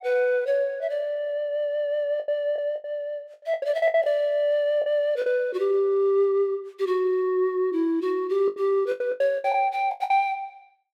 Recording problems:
packet loss; 9% of the sound replaced, filled with the last packet

